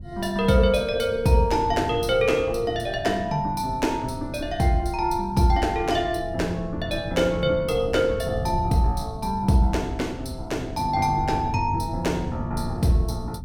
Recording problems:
wind on the microphone; below 140 Hz, SNR 11 dB

